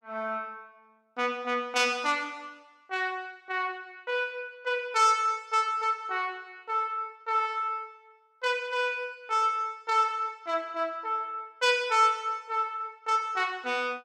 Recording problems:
none

